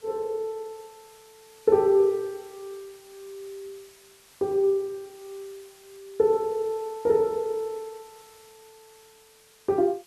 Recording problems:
background hiss; slope 0 dB per octave, SNR 27 dB

